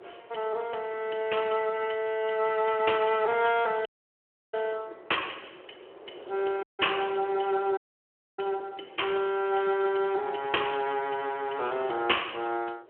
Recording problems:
telephone audio; 320 Hz to 3.2 kHz, Speex
wind on the microphone; below 710 Hz, SNR 21 dB
dropout; at 4 s for 0.5 s, at 6.5 s and at 8 s for 0.5 s

